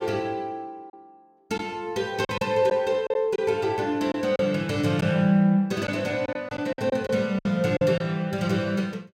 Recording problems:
packet loss; 6% of the sound replaced, filled with silence

